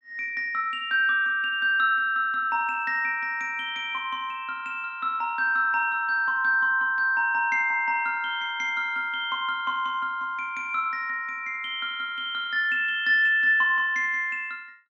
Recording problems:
none

